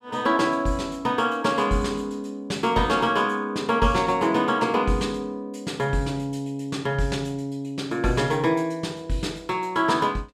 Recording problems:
none

